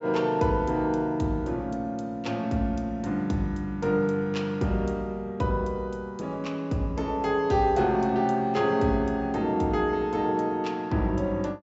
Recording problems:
treble cut off; nothing above 8 kHz

